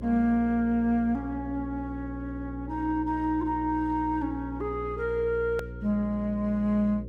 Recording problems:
hum; 60 Hz, harmonics up to 540 Hz, SNR 11 dB
hard cut with a click; at 5.5 s

